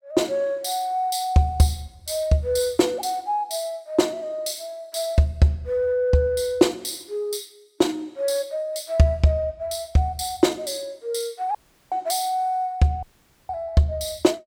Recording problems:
dropout; at 12 s and at 13 s

